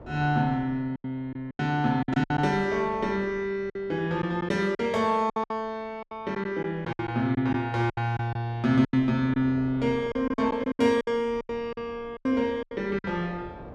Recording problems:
wind on the microphone; below 560 Hz, SNR 22 dB
lost packets; 12% of the sound replaced, filled with silence

